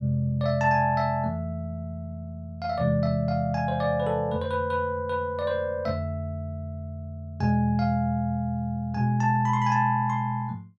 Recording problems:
none

